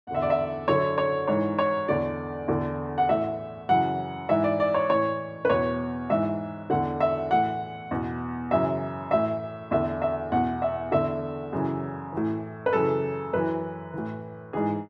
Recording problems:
none

